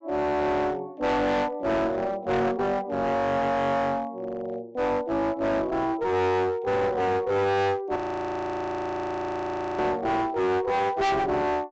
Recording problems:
treble cut off; nothing above 8 kHz
distorted audio; hard clipping, uneven, signal-to-distortion ratio 5 dB
audio freezing; at 8 s for 2 s

